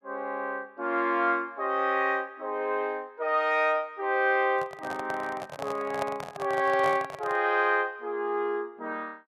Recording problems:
handling noise; from 4.5 to 7.5 s; peak -1 dB vs average level

